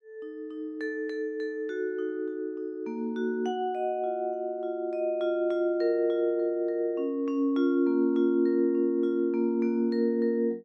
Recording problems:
none

